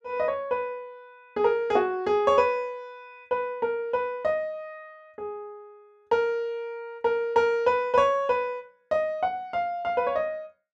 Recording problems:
none

